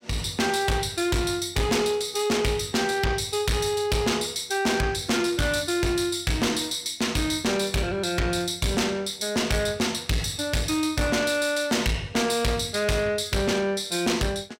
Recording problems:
distorted audio; soft clipping, signal-to-distortion ratio 6 dB

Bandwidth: 16 kHz